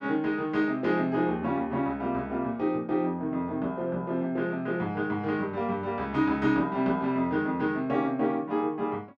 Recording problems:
none

